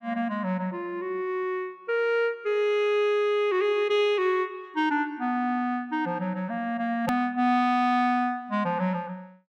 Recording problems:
click at an edit; at 7 s

